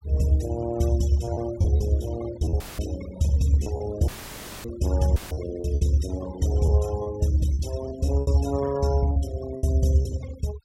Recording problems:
noise reduction artefacts; signal-to-artefact ratio 17 dB
packet loss; 8% of the sound replaced, filled with repeated pitch periods
dropout; at 2.5 s, at 4 s for 0.5 s and at 5 s; filled with static

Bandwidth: 16 kHz